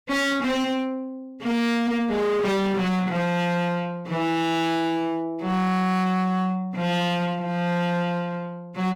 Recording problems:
distorted audio; hard clipping, signal-to-distortion ratio 7 dB

